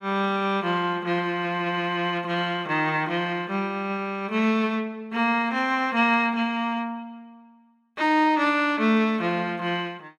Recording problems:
none

